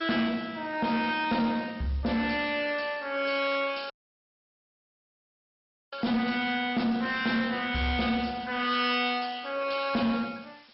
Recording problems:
lossy compression; MP2, log-spectral distance 7 dB, nothing above 5.3 kHz
distorted audio; soft clipping, signal-to-distortion ratio 12 dB
background hiss; slope +1 dB per octave, SNR 28 dB
dropout; at 4 s for 2 s

